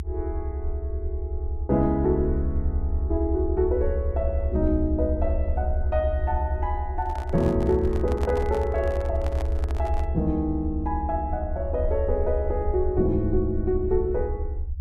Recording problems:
low-frequency rumble; below 74 Hz, SNR 2 dB
handling noise; from 7 to 10 s; peak -4 dB vs average level

